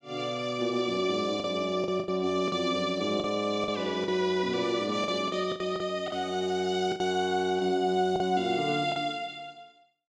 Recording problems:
packet loss; 7% of the sound replaced, filled with the last packet

